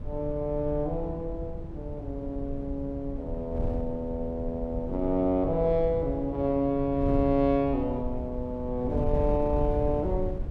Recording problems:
wind noise; below 110 Hz, SNR 7 dB

